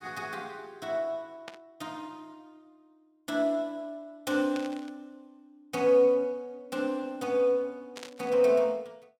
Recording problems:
static burst; at 1.5 s, at 4.5 s and at 8 s; peak -8 dB vs average level

